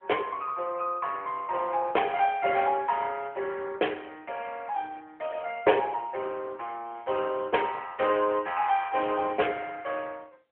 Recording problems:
telephone audio; 340 Hz to 3.2 kHz, AMR-NB

